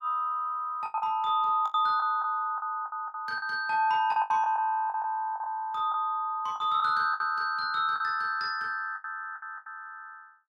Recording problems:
packet loss; 11% of the sound replaced, filled with the last packet

